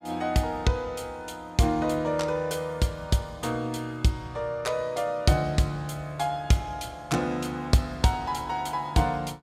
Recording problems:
none

